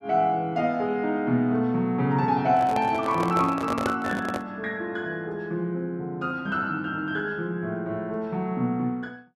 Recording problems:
handling noise; from 2.5 to 4.5 s; peak +3 dB vs average level

